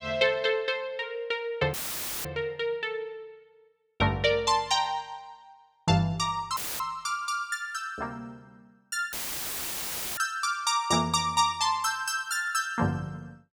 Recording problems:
audio cutting out; at 1.5 s for 0.5 s, at 6.5 s and at 9 s for 1 s; filled with static

